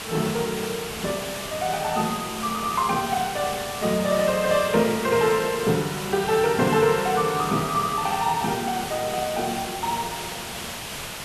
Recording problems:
background hiss; slope -1 dB per octave, SNR 8 dB

